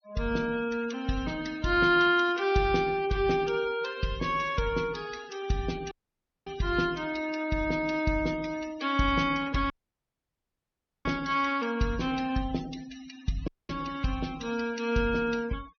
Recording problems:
treble missing; nothing above 6.2 kHz
noise reduction artefacts; signal-to-artefact ratio 19 dB
dropout; at 6 s for 0.5 s, at 9.5 s for 1.5 s and at 13 s

